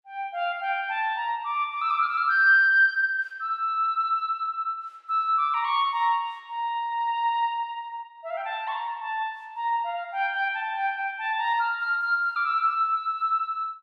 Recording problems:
none

